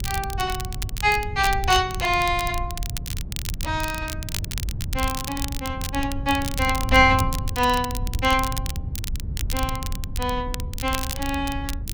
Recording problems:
wind noise; below 100 Hz, SNR 7 dB
crackling; vinyl, SNR 10 dB

